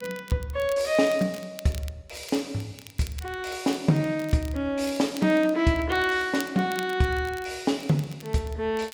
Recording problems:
crackle; vinyl, SNR 20 dB

